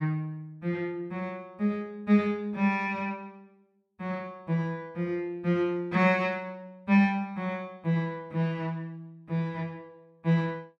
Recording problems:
none

